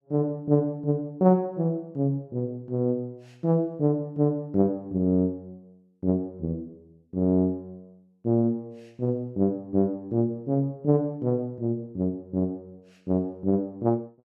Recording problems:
none

